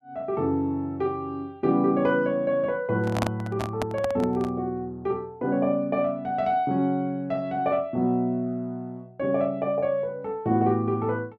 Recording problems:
microphone handling noise; from 3 to 4.5 s; peak +3 dB vs average level

